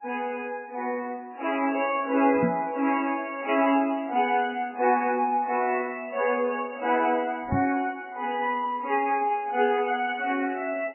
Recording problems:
codec artefacts; MP3, then MP3, log-spectral distance 4 dB, nothing above 2.9 kHz
microphone bump; at 2.5 s and at 7.5 s; peak +4 dB vs average level

